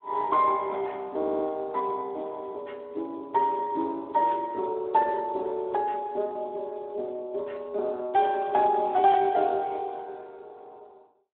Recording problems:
telephone audio; 280 Hz to 3.8 kHz, Speex
stutter; at 1 s

